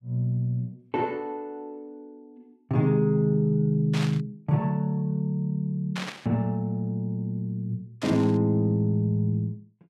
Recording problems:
static burst; at 4 s, at 6 s and at 8 s; peak -4 dB vs average level

